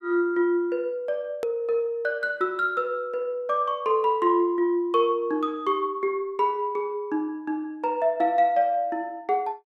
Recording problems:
hard cut with a click; at 1.5 s

